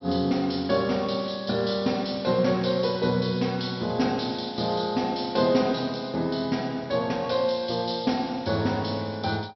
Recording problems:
treble cut off; nothing above 5.7 kHz

